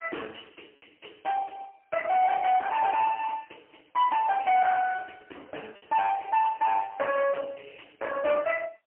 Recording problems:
telephone audio; 260 Hz to 3.1 kHz, AMR-NB, then MP3
distortion; soft clipping, signal-to-distortion ratio 7 dB
packet loss; 1.7% of the sound replaced, filled with repeated pitch periods

